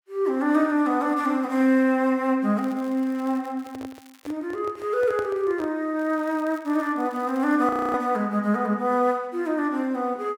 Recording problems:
crackling; from 2.5 to 4.5 s and from 6 to 7.5 s; loose cable, SNR 29 dB
handling noise; from 3.5 to 6 s; peak -8 dB vs average level
frozen audio; at 7.5 s

